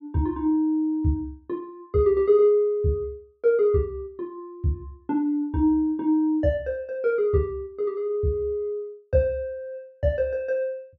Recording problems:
none

